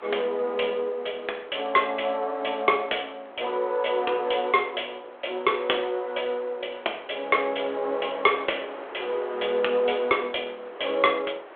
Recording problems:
telephone audio; 320 Hz to 3.4 kHz, G.726
wind noise; below 1.4 kHz, SNR 17 dB

